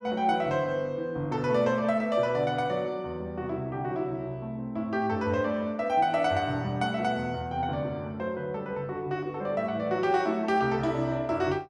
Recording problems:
none

